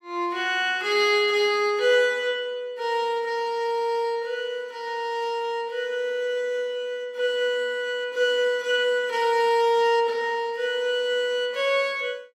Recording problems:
none

